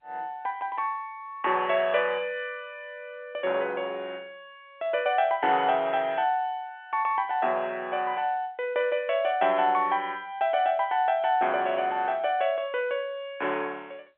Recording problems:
telephone audio; 300 Hz to 3.5 kHz, G.711

